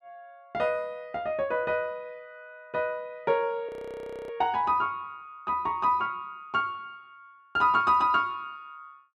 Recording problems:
frozen audio; at 3.5 s for 0.5 s

